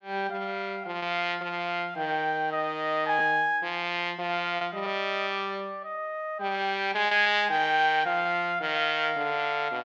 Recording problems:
lost packets; 2% of the sound replaced, filled with repeated pitch periods

